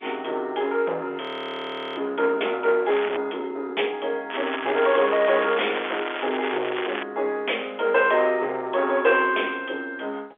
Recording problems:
phone line; 320 Hz to 3.5 kHz, G.711
distortion; soft clipping, signal-to-distortion ratio 12 dB
audio freezing; at 1 s for 1 s
crackle; at 3 s and from 4.5 to 7 s; loose cable, SNR 8 dB

